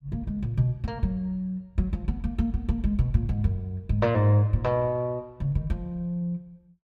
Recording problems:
none

